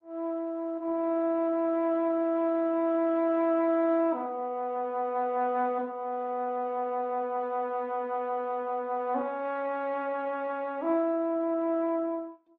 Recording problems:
lossy compression; AAC, then Opus, log-spectral distance 2 dB

